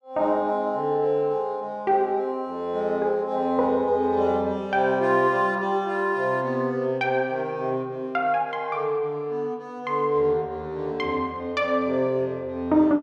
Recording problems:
none

